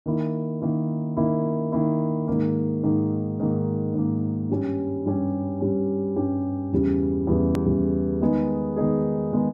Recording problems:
click at an edit; at 7.5 s

